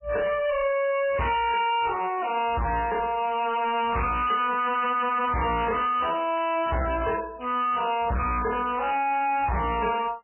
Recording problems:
lossy codec; MP3, log-spectral distance 6 dB, nothing above 3 kHz
distorted audio; hard clipping, signal-to-distortion ratio 5 dB

